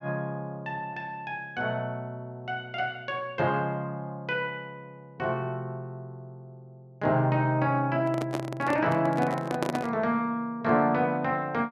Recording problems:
microphone handling noise; from 8 to 10 s; peak +3 dB vs average level

